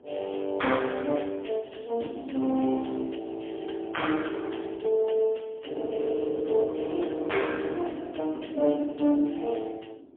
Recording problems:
phone line; 220 Hz to 3.4 kHz, AMR-NB, then MP3
wind noise; below 390 Hz, SNR 16 dB

